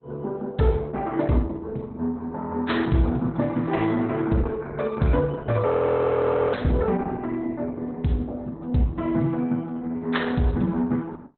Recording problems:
codec artefacts; Opus, log-spectral distance 3 dB, nothing above 4.1 kHz
audio freezing; at 5.5 s for 1 s

